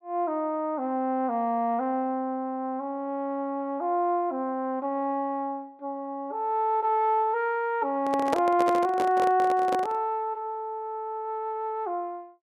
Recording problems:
microphone handling noise; from 8 to 10 s; peak +3 dB vs average level

